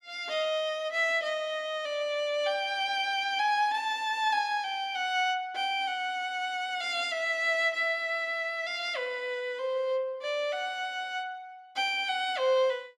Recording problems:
none

